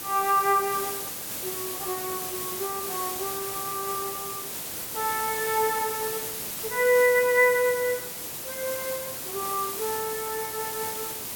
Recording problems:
background hiss; slope -2 dB per octave, SNR 4 dB

